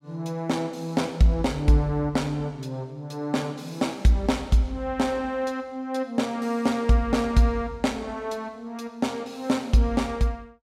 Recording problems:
none

